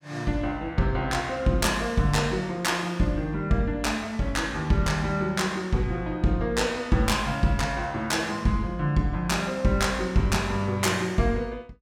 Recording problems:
none

